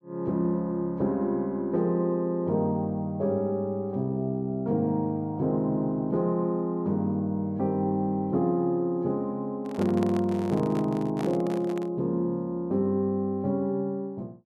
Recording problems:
microphone handling noise; from 9.5 to 12 s; peak -4 dB vs average level

